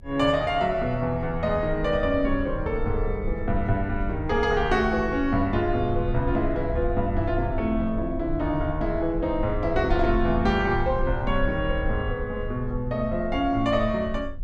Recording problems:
rumble; below 68 Hz, SNR 8 dB

